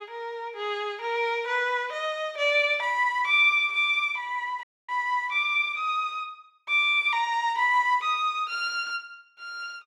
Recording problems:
audio cutting out; at 4.5 s

